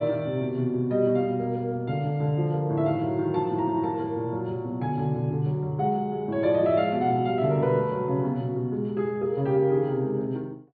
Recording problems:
treble missing; nothing above 4.7 kHz

